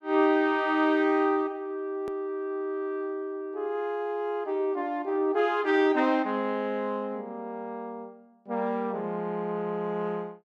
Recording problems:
edit click; at 2 s

